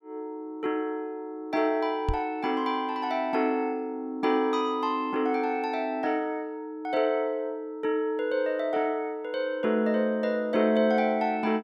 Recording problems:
knock on the microphone; at 2 s; peak +2 dB vs average level

